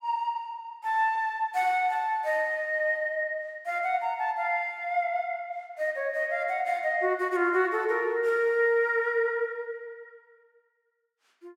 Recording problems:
none

